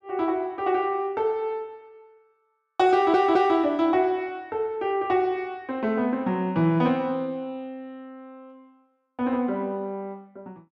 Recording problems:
audio stuttering; at 3 s

